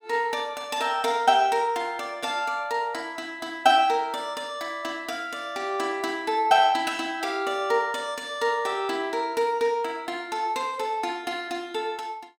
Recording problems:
none

